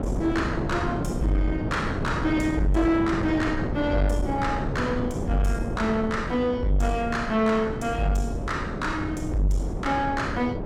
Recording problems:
distortion; soft clipping, signal-to-distortion ratio 10 dB
wind noise; below 400 Hz, SNR 5 dB

